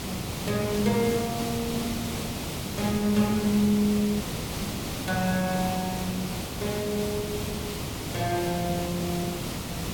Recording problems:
background hiss; SNR 4 dB
audio cutting out; at 4 s

